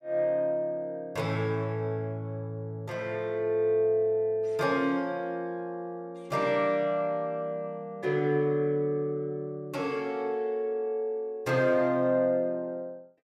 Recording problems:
none

